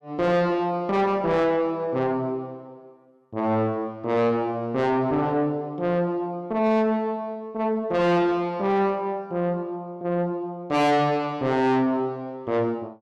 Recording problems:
distortion; soft clipping, signal-to-distortion ratio 6 dB

